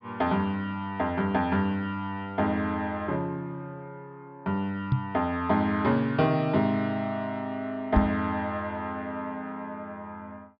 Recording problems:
treble cut off; nothing above 5.5 kHz
knock on the microphone; at 5 s and at 8 s; peak +8 dB vs average level

